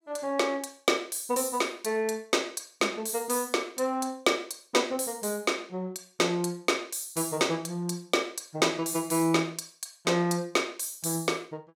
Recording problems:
none

